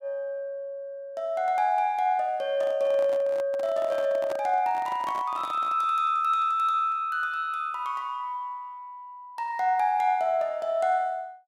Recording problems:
microphone handling noise; from 2.5 to 6 s; peak -7 dB vs average level

